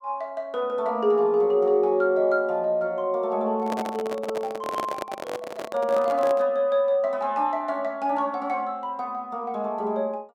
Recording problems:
microphone handling noise; from 3.5 to 6.5 s; peak -1 dB vs average level

